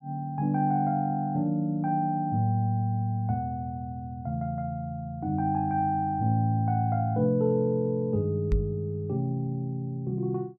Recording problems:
microphone bump; at 8.5 s; peak +4 dB vs average level

